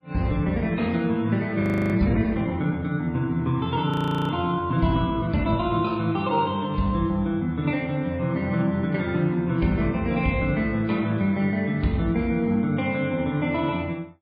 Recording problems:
lossy codec; MP3, log-spectral distance 2 dB, nothing above 15.1 kHz
frozen audio; at 1.5 s and at 4 s

